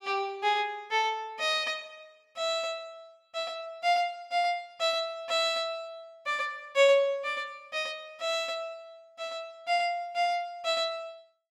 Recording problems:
none

